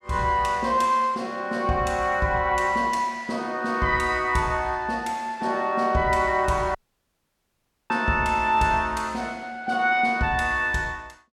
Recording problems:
dropout; at 7 s for 1 s

